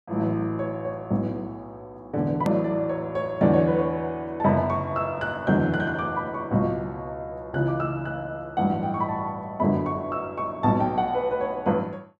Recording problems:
click at an edit; at 2.5 s

